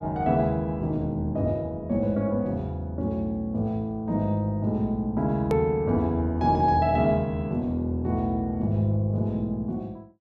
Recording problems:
edit click; at 5.5 s

